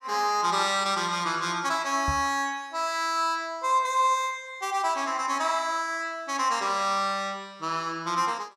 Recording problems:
microphone bump; at 2 s; peak -1 dB vs average level

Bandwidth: 15 kHz